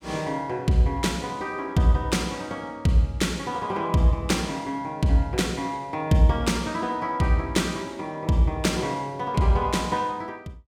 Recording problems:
none

